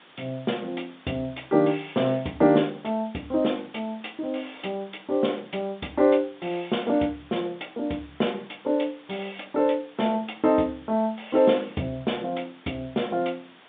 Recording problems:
telephone audio; 150 Hz to 3.7 kHz, G.711
background hiss; SNR 25 dB

